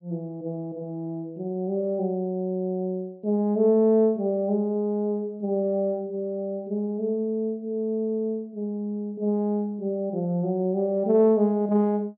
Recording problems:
low-pass filter; nothing above 5.5 kHz

